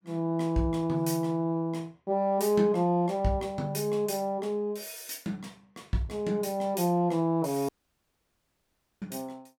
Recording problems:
dropout; at 7.5 s for 1.5 s

